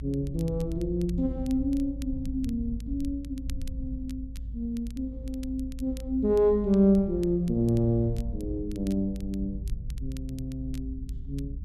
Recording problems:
low-frequency rumble; below 74 Hz, strongest tone 54 Hz, SNR 9 dB
crackle; vinyl, SNR 26 dB

